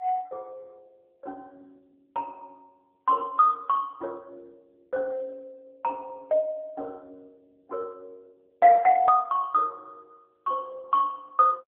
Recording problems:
phone line; 370 Hz to 2.6 kHz, AMR-NB

